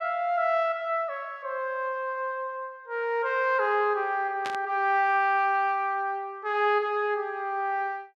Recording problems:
burst of static; at 4.5 s; peak -5 dB vs average level

